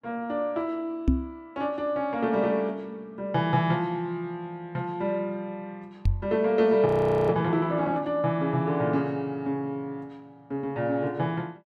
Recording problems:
microphone thump; at 1 s and at 6 s; peak +8 dB vs average level
frozen audio; at 7 s

